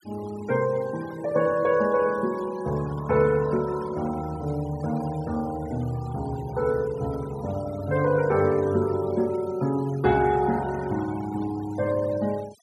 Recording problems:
denoising artefacts; signal-to-artefact ratio 20 dB

